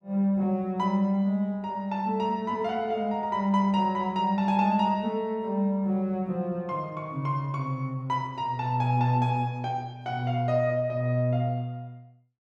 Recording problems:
none

